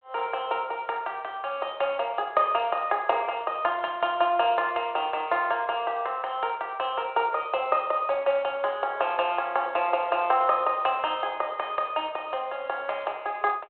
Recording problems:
phone line; 320 Hz to 3.3 kHz, G.726

